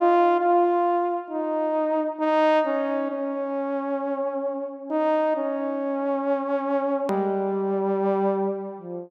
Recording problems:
hard cut with a click; at 7 s

